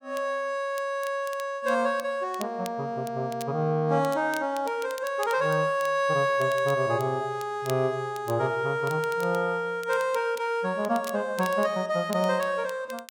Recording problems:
crackling; vinyl, SNR 20 dB

